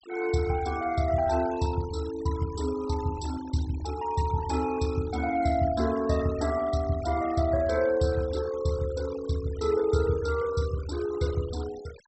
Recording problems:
treble cut off; nothing above 7.9 kHz
denoising artefacts; signal-to-artefact ratio 18 dB

